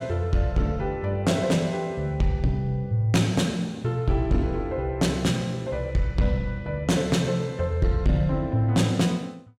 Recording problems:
distortion; soft clipping, signal-to-distortion ratio 12 dB

